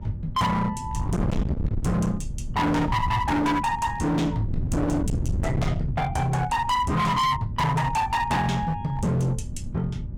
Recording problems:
distortion; hard clipping, signal-to-distortion ratio 6 dB
mains hum; 60 Hz, harmonics up to 1.2 kHz, SNR 22 dB
wind noise; below 170 Hz, SNR 6 dB

